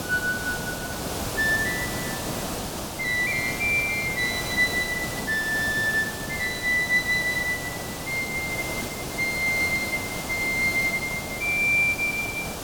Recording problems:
hiss; SNR 7 dB

